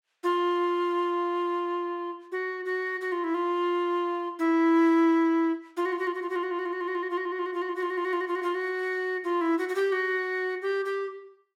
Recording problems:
none

